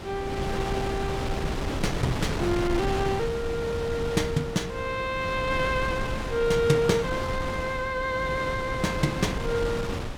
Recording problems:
wind noise; below 710 Hz, SNR 4 dB

